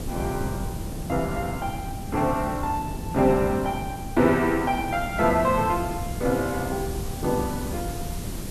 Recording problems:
background hiss; slope -2 dB per octave, SNR 16 dB
wind noise; below 230 Hz, SNR 8 dB

